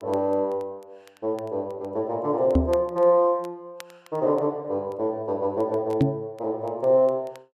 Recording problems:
crackle; vinyl, SNR 29 dB
knock on the microphone; at 2.5 s and at 6 s; peak +7 dB vs average level

